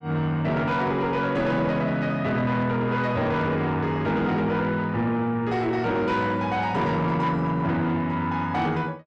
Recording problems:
distorted audio; soft clipping, signal-to-distortion ratio 11 dB

